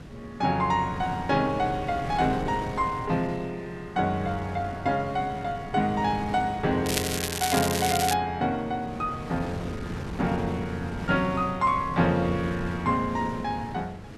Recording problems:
wind noise; below 420 Hz, SNR 11 dB
crackling; from 7 to 8 s; loose cable, SNR 2 dB

